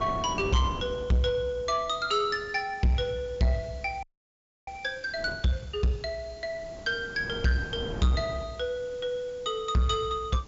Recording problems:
low-pass filter; nothing above 7.4 kHz
distortion; soft clipping, signal-to-distortion ratio 11 dB
hiss; slope +1 dB per octave, SNR 27 dB
wind on the microphone; below 490 Hz, SNR 13 dB
audio freezing; at 4 s for 0.5 s

